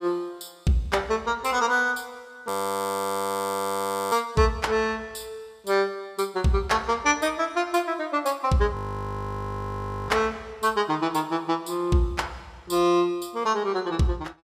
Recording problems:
audio freezing; at 2.5 s for 1.5 s and at 9 s for 1.5 s

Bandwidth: 15 kHz